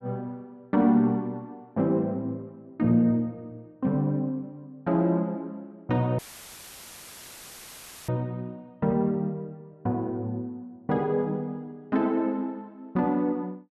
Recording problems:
dropout; at 6 s for 2 s; filled with static

